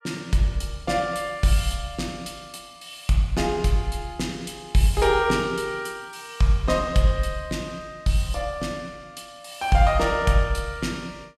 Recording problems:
none

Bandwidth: 14.5 kHz